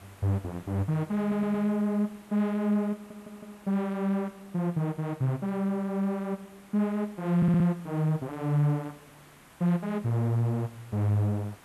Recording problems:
background hiss; SNR 25 dB
stutter; at 1 s, at 3 s and at 7.5 s

